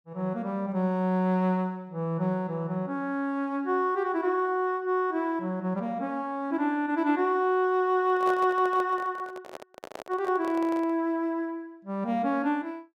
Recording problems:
microphone handling noise; from 8 to 11 s; peak -6 dB vs average level

